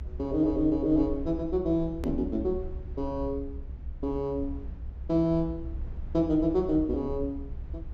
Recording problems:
treble missing; nothing above 8 kHz
rumble; below 68 Hz, SNR 11 dB
edit click; at 2 s

